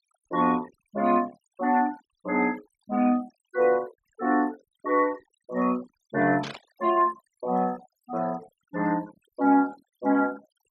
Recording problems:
denoising artefacts; signal-to-artefact ratio 21 dB
static burst; at 6.5 s; peak -7 dB vs average level

